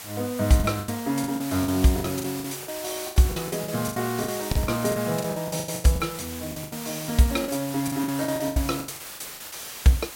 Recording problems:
hiss; slope 0 dB per octave, SNR 10 dB
packet loss; 17% of the sound replaced, filled with the last packet

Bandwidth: 16.5 kHz